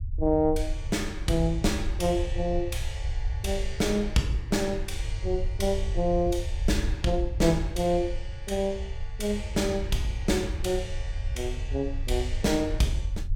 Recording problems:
rumble; below 72 Hz, SNR 5 dB

